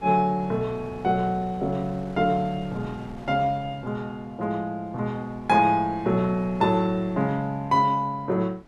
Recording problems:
wind on the microphone; below 620 Hz, SNR 20 dB

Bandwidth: 13 kHz